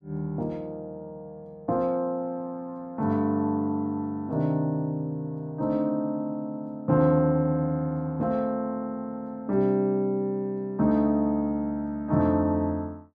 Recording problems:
none

